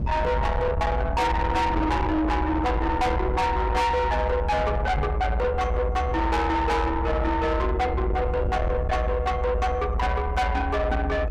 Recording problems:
distortion; soft clipping, signal-to-distortion ratio 8 dB
low-frequency rumble; below 430 Hz, strongest tone 52 Hz, SNR 3 dB
microphone thump; at 5 s; peak -1 dB vs average level

